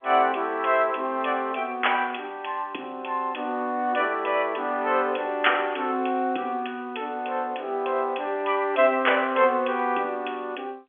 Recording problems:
telephone audio; 220 Hz to 3.4 kHz, G.711

